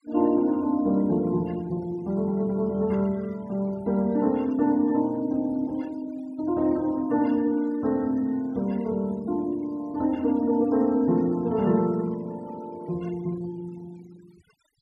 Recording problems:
denoising artefacts; signal-to-artefact ratio 25 dB

